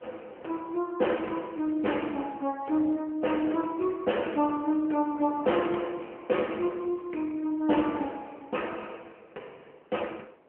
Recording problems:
telephone audio; 260 Hz to 3.1 kHz, AMR-NB
wind on the microphone; below 990 Hz, SNR 24 dB

